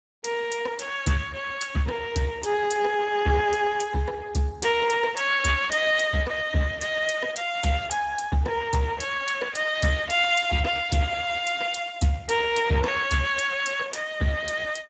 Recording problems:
lossy codec; Speex, log-spectral distance 5 dB, nothing above 7.6 kHz

